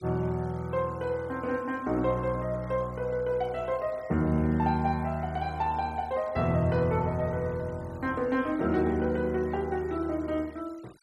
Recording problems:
denoising artefacts; signal-to-artefact ratio 26 dB

